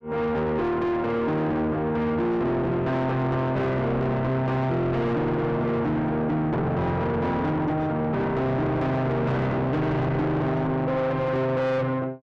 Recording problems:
distorted audio; soft clipping, signal-to-distortion ratio 6 dB

